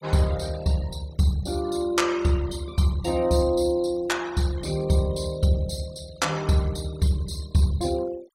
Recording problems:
denoising artefacts; signal-to-artefact ratio 21 dB

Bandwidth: 16 kHz